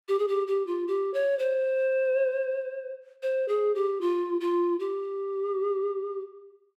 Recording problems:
none

